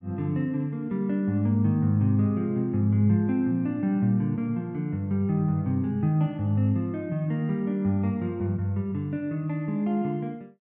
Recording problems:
none

